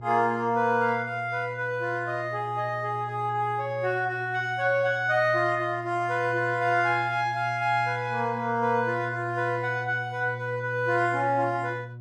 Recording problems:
hum; 60 Hz, harmonics up to 600 Hz, SNR 13 dB

